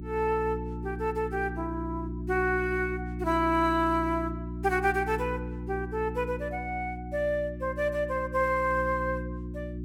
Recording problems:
electrical hum; 60 Hz, harmonics up to 360 Hz, SNR 8 dB

